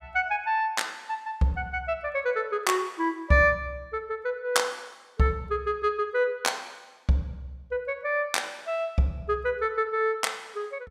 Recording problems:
none

